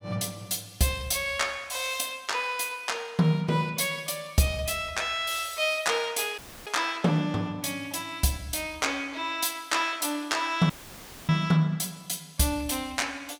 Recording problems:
dropout; at 6.5 s and at 11 s for 0.5 s; filled with static

